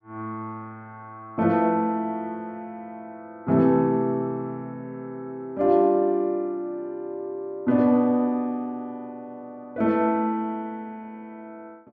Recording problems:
none

